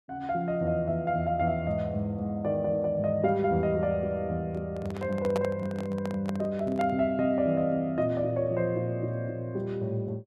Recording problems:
handling noise; from 4.5 to 7 s; peak -1 dB vs average level

